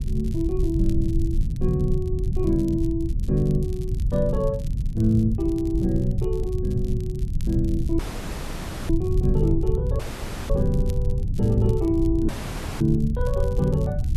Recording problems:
rumble; below 110 Hz, SNR 1 dB
crackling; vinyl, SNR 26 dB
dropout; at 8 s for 1 s, at 10 s for 0.5 s and at 12 s for 0.5 s

